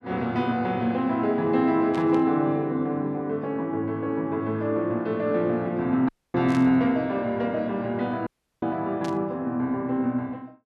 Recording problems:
burst of static; at 2 s, at 6.5 s and at 9 s; peak -11 dB vs average level
dropout; at 6 s and at 8.5 s

